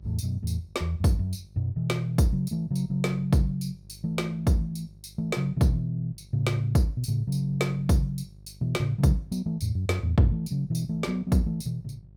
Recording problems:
electrical hum; 50 Hz, harmonics up to 400 Hz, SNR 23 dB

